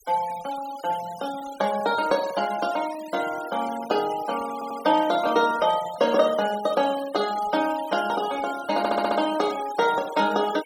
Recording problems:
noise reduction artefacts; signal-to-artefact ratio 16 dB
audio stuttering; at 4.5 s and at 9 s

